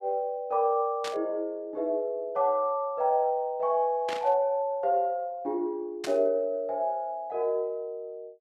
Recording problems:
static burst; at 1 s, at 4 s and at 6 s; peak -4 dB vs average level

